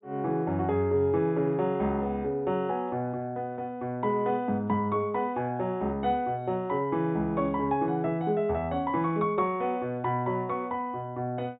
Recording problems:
low-pass filter; nothing above 4 kHz

